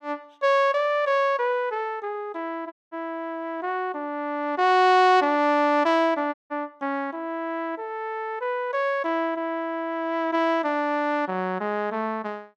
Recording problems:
dropout; at 2.5 s and at 6.5 s

